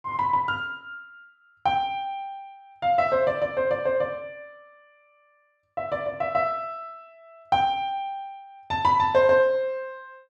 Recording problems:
none

